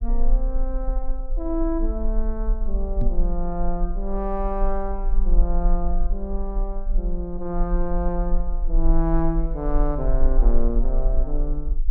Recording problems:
low-frequency rumble; below 38 Hz, strongest tone 20 Hz, SNR -3 dB
microphone bump; at 3 s; peak +5 dB vs average level

